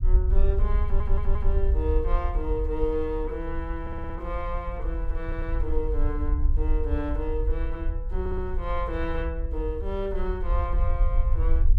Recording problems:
low-frequency rumble; below 58 Hz, SNR -4 dB
stutter; 4 times, first at 1 s

